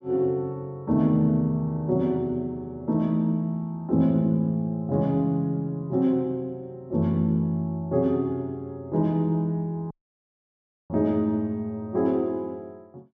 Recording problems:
treble missing; nothing above 8 kHz
audio cutting out; at 10 s for 1 s

